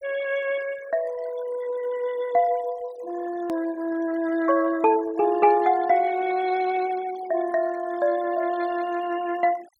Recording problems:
noise reduction artefacts; signal-to-artefact ratio 17 dB
hard cut with a click; at 3.5 s

